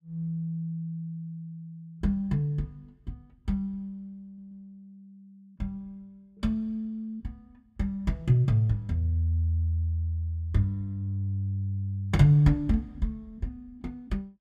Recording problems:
audio stuttering; at 4.5 s

